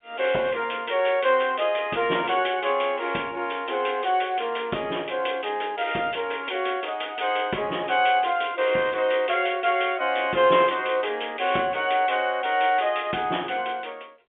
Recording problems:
phone line; 240 Hz to 3.5 kHz, G.711

